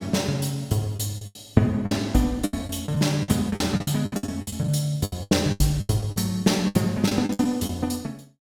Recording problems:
lost packets; 16% of the sound replaced, filled with the last packet

